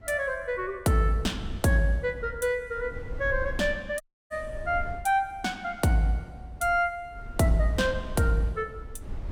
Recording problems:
wind noise; below 86 Hz, SNR 14 dB
audio cutting out; at 4 s

